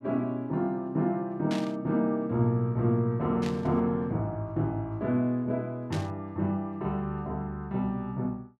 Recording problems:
burst of static; at 1.5 s, at 3.5 s and at 6 s; peak -5 dB vs average level

